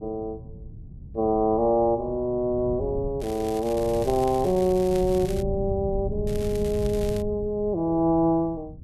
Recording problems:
rumble; below 140 Hz, SNR 12 dB
crackle; from 3 to 5.5 s and at 6.5 s; loose cable, SNR 19 dB

